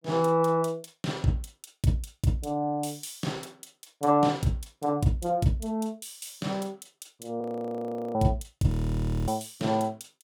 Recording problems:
frozen audio; at 7.5 s for 0.5 s and at 8.5 s for 0.5 s

